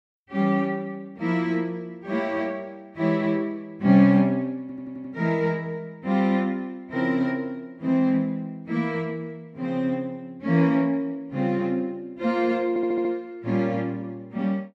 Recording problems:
audio stuttering; at 4.5 s and at 13 s

